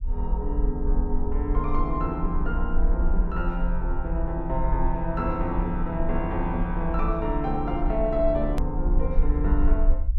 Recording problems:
rumble; below 48 Hz, strongest tone 20 Hz, SNR 1 dB
edit click; at 8.5 s

